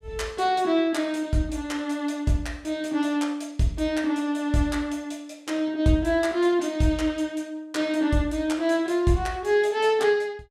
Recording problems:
none

